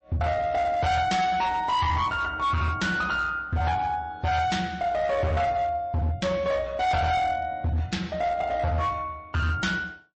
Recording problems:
lossy compression; MP3, log-spectral distance 2 dB, nothing above 8 kHz
distortion; hard clipping, uneven, signal-to-distortion ratio 8 dB

